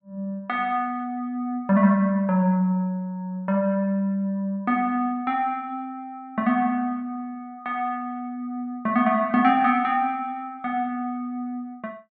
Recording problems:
none

